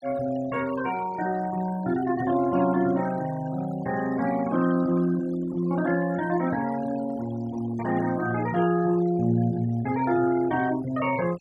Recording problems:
noise reduction artefacts; signal-to-artefact ratio 17 dB

